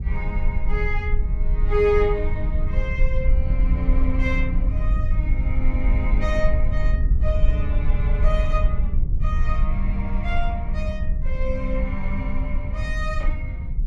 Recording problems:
low-frequency rumble; below 58 Hz, strongest tone 20 Hz, SNR -5 dB

